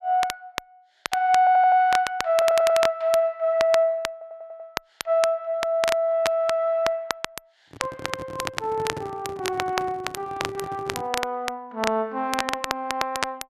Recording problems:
crackle; vinyl, SNR 9 dB
audio stuttering; at 1.5 s, at 2.5 s and at 4 s
handling noise; from 7.5 to 11 s; peak -7 dB vs average level

